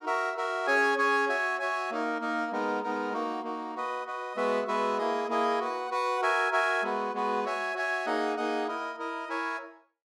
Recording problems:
none

